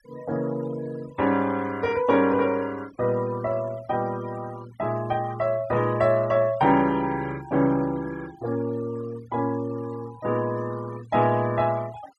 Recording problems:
noise reduction artefacts; signal-to-artefact ratio 21 dB

